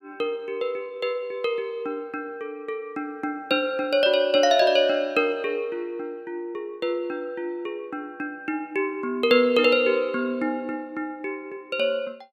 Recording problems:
none

